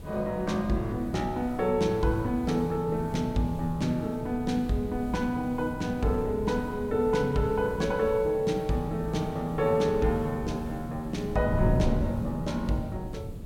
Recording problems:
background hiss; SNR 28 dB
wind noise; below 190 Hz, SNR 9 dB

